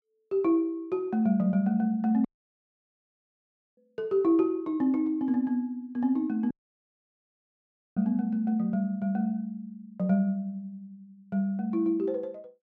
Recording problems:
dropout; at 2.5 s for 1.5 s and at 6.5 s for 1.5 s

